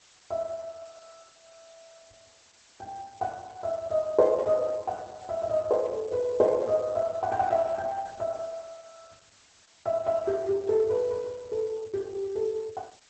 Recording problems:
lossy codec; Opus, log-spectral distance 9 dB, nothing above 7.8 kHz
background hiss; slope +1 dB per octave, SNR 27 dB

